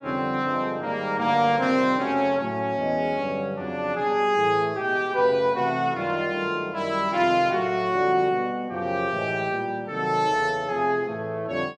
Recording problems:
none

